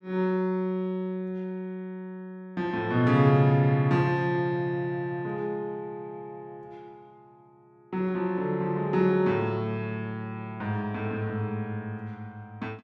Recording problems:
none

